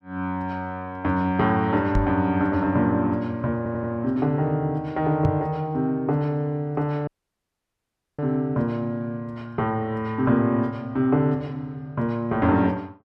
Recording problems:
knock on the microphone; at 2 s and at 5.5 s; peak +3 dB vs average level
stutter; at 3.5 s
dropout; at 7 s for 1 s

